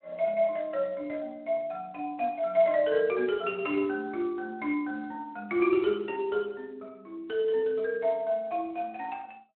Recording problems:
telephone audio; 240 Hz to 3.9 kHz, Speex

